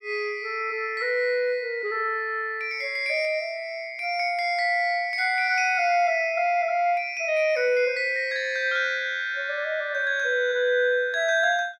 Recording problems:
none

